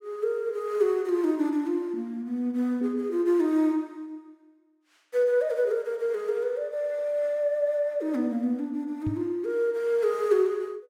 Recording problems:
microphone bump; at 9 s; peak -1 dB vs average level

